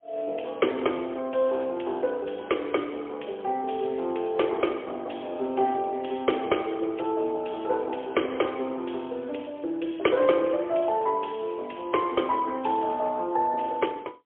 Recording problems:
telephone audio; 260 Hz to 3.3 kHz, AMR-NB, then MP3

